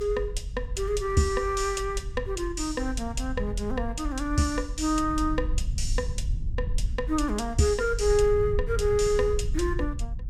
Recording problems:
rumble; below 66 Hz, SNR 6 dB

